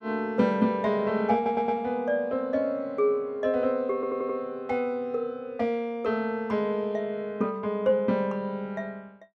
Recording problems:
stutter; at 1.5 s and at 4 s

